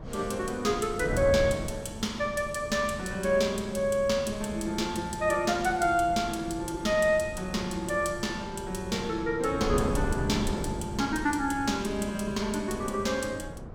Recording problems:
wind on the microphone; below 270 Hz, SNR 10 dB

